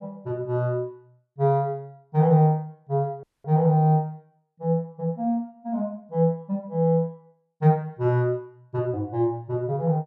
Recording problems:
audio cutting out; at 3 s

